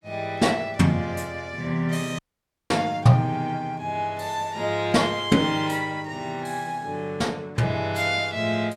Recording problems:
audio cutting out; at 2 s for 0.5 s

